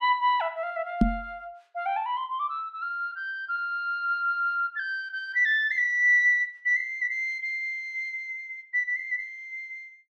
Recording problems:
microphone thump; at 1 s; peak +9 dB vs average level

